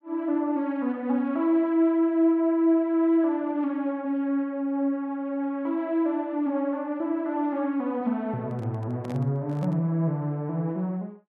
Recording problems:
microphone handling noise; from 8.5 to 10 s; peak -11 dB vs average level

